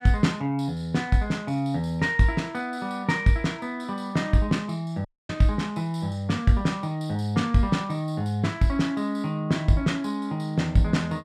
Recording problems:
audio cutting out; at 5 s

